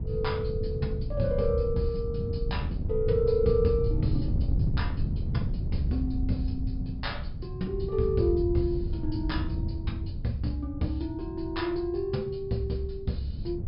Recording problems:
treble missing; nothing above 5.5 kHz
wind on the microphone; below 130 Hz, SNR 2 dB

